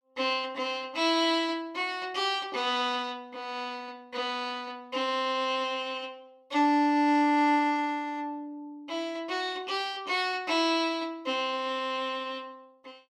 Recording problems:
none

